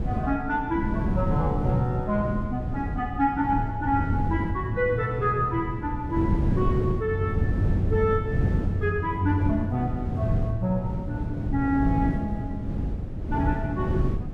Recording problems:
wind on the microphone; below 190 Hz, SNR 2 dB

